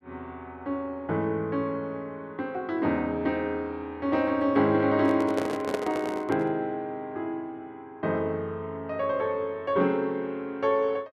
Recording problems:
microphone handling noise; from 5 to 6.5 s; peak +2 dB vs average level

